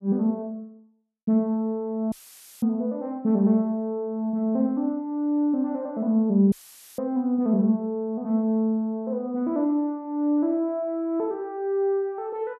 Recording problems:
dropout; at 2 s for 0.5 s and at 6.5 s; filled with static

